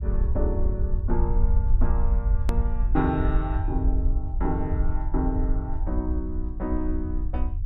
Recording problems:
low-frequency rumble; below 64 Hz, SNR -4 dB
edit click; at 2.5 s

